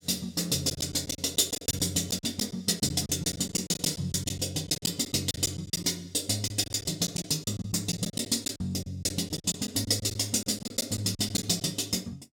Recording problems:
lost packets; 12% of the sound replaced, filled with silence

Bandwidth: 17 kHz